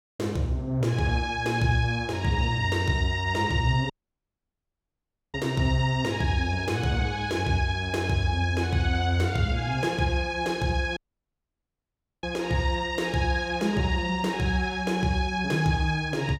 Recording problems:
dropout; at 4 s for 1.5 s and at 11 s for 1.5 s

